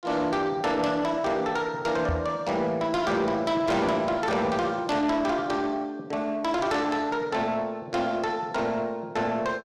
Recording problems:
distortion; soft clipping, signal-to-distortion ratio 11 dB
microphone thump; at 2 s; peak +2 dB vs average level

